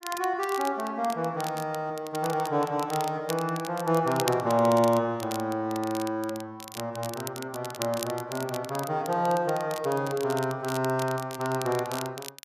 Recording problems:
crackle; vinyl, SNR 13 dB

